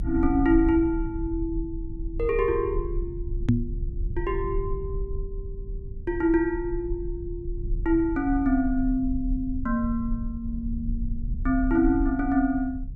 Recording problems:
low-frequency rumble; below 64 Hz, strongest tone 36 Hz, SNR 8 dB
knock on the microphone; at 3.5 s; peak +9 dB vs average level

